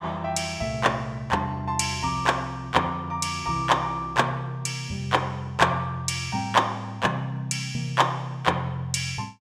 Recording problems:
none

